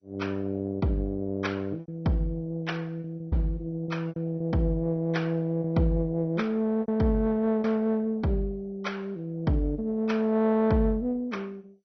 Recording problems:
lossy codec; MP2, log-spectral distance 2 dB, nothing above 6 kHz
packet loss; 4% of the sound replaced, filled with repeated pitch periods

